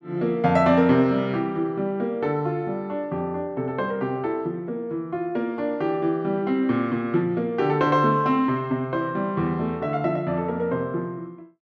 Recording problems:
none

